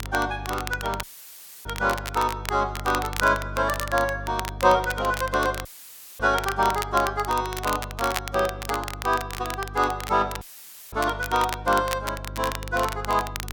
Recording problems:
mains hum; 50 Hz, harmonics up to 450 Hz, SNR 13 dB
crackle; vinyl, SNR 10 dB
dropout; at 1 s for 0.5 s, at 5.5 s for 0.5 s and at 10 s for 0.5 s; filled with static

